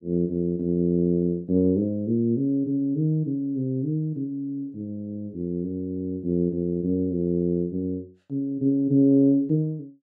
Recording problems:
none

